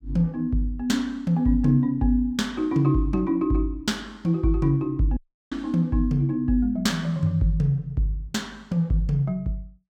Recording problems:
dropout; at 5 s

